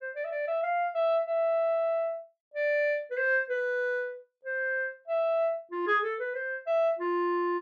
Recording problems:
none

